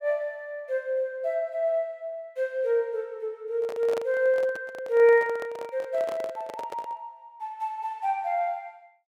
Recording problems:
microphone handling noise; from 3.5 to 7 s; peak -4 dB vs average level

